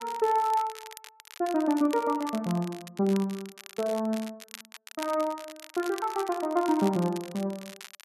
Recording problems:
crackle; vinyl, SNR 16 dB

